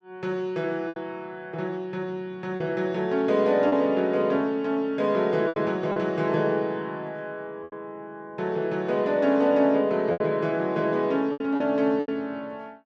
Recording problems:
packet loss; 5% of the sound replaced, filled with repeated pitch periods

